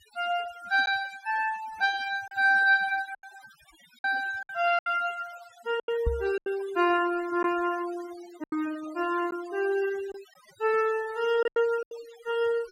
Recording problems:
noise reduction artefacts; signal-to-artefact ratio 18 dB
lost packets; 6% of the sound replaced, filled with silence
microphone thump; at 6 s; peak +2 dB vs average level

